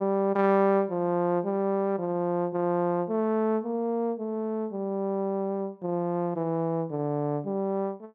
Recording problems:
none

